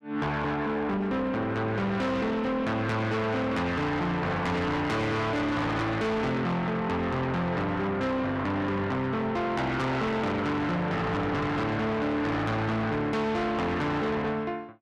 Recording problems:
distorted audio; soft clipping, signal-to-distortion ratio 7 dB

